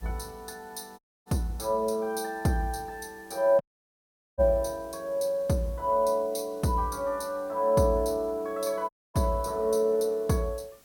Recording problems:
background hiss; slope -2 dB per octave, SNR 28 dB
dropout; at 1 s, at 3.5 s for 1 s and at 9 s

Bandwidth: 17 kHz